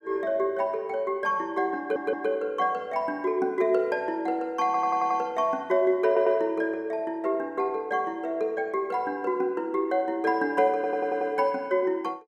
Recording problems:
stutter; 4 times, first at 2 s

